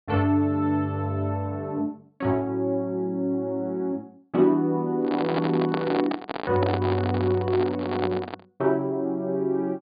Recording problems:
low-pass filter; nothing above 4.8 kHz
microphone handling noise; from 5 to 8.5 s; peak +1 dB vs average level

